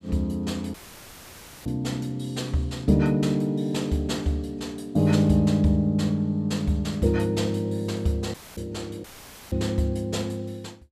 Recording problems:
audio cutting out; at 0.5 s for 1 s, at 8.5 s and at 9 s; filled with static

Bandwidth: 14.5 kHz